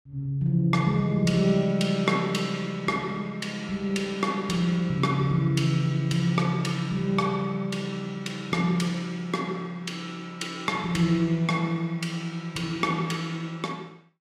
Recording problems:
none

